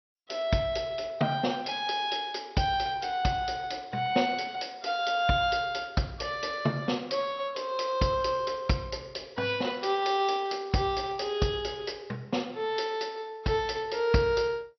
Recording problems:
codec artefacts; MP2, log-spectral distance 5 dB, nothing above 5.5 kHz
crackle; from 9.5 to 11 s; loose cable, SNR 28 dB

